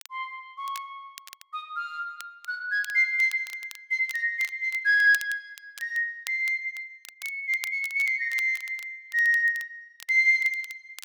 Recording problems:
crackle; vinyl, SNR 20 dB

